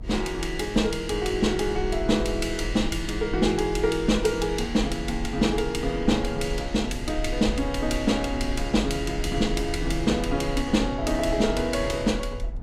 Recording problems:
low-frequency rumble; below 58 Hz, SNR 9 dB

